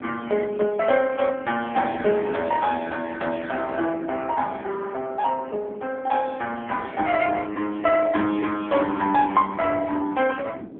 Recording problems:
telephone audio; 240 Hz to 3.4 kHz, AMR-NB
wind on the microphone; below 370 Hz, SNR 17 dB

